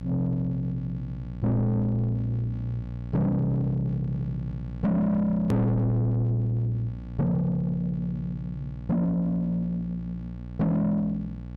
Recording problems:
distortion; soft clipping, signal-to-distortion ratio 8 dB
electrical hum; 60 Hz, harmonics up to 840 Hz, SNR 11 dB
hard cut with a click; at 5.5 s

